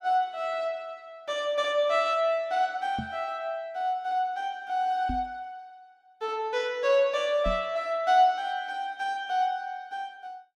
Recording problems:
microphone thump; at 3 s, at 5 s and at 7.5 s; peak -2 dB vs average level

